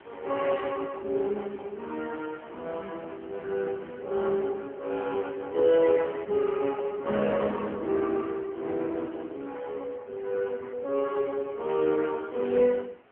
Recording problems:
telephone audio; 220 Hz to 3.3 kHz, AMR-NB
wind noise; below 1.7 kHz, SNR 24 dB

